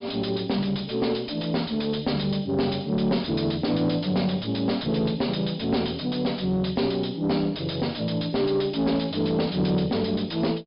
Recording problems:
treble missing; nothing above 5.5 kHz
distortion; soft clipping, signal-to-distortion ratio 11 dB

